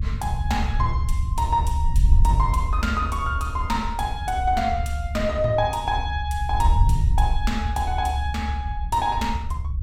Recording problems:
rumble; below 74 Hz, SNR 4 dB
wind noise; below 74 Hz, SNR 3 dB

